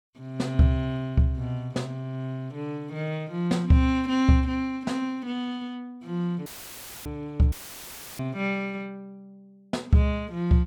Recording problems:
dropout; at 6.5 s for 0.5 s and at 7.5 s for 0.5 s; filled with static

